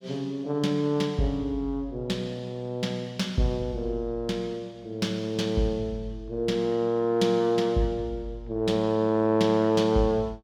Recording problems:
none

